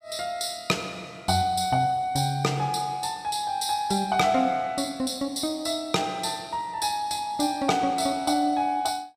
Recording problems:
none

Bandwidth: 15 kHz